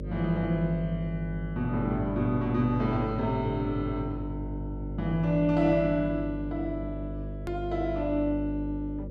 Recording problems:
hum; 50 Hz, harmonics up to 600 Hz, SNR 8 dB
edit click; at 7.5 s

